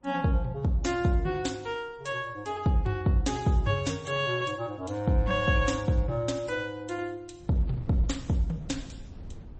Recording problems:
codec artefacts; MP3, then MP3, log-spectral distance 2 dB, nothing above 8.2 kHz
wind noise; below 150 Hz, SNR 17 dB

